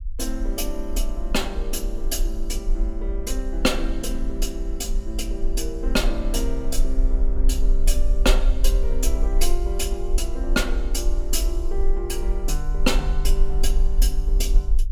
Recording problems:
rumble; below 40 Hz, SNR -2 dB

